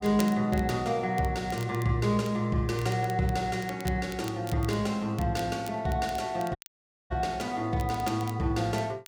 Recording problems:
crackling; vinyl, SNR 19 dB
audio cutting out; at 6.5 s for 0.5 s

